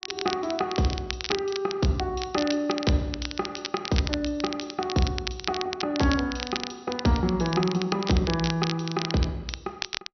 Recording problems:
treble cut off; nothing above 6 kHz
crackling; vinyl, SNR 7 dB

